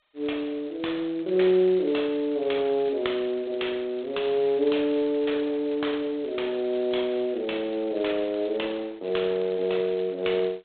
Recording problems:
phone line; 300 Hz to 3.7 kHz, G.726

